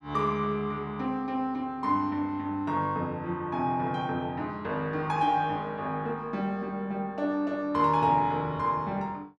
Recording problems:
none

